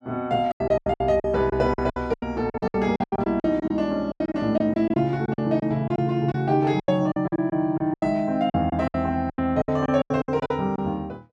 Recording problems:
lost packets; 18% of the sound replaced, filled with silence

